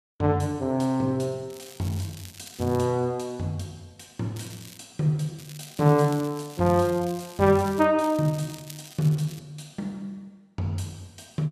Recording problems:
crackle; 4 times, first at 1.5 s; loose cable, SNR 19 dB

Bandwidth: 14.5 kHz